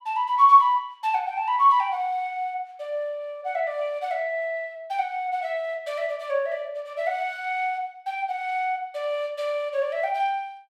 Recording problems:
none

